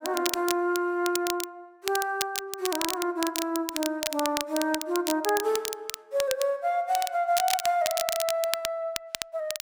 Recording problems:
crackle; vinyl, SNR 5 dB

